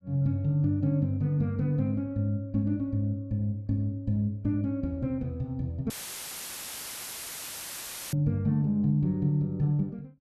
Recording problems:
dropout; at 6 s for 2 s; filled with static

